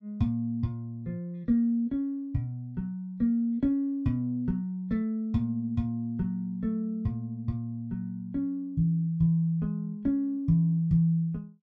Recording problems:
none

